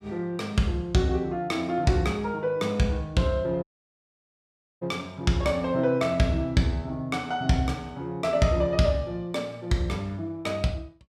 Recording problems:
audio cutting out; at 3.5 s for 1 s

